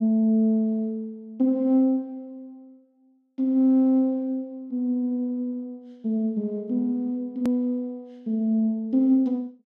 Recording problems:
hard cut with a click; at 7.5 s

